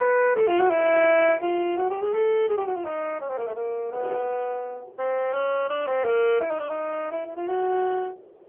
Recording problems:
phone line; 320 Hz to 3.1 kHz, AMR-NB
wind noise; below 570 Hz, SNR 20 dB

